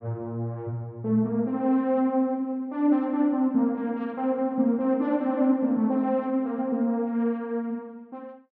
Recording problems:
none

